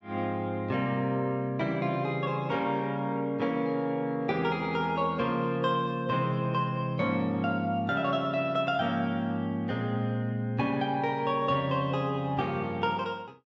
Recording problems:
treble cut off; nothing above 8 kHz

